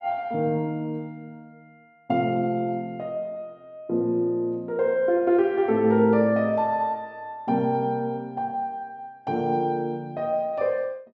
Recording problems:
none

